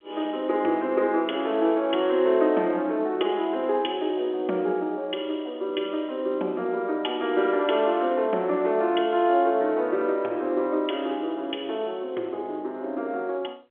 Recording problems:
phone line; 280 Hz to 3.4 kHz, G.711

